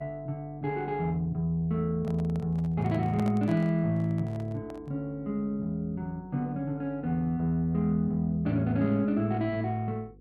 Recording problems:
electrical hum; 50 Hz, harmonics up to 500 Hz, SNR 25 dB
handling noise; from 2 to 5 s; peak -7 dB vs average level

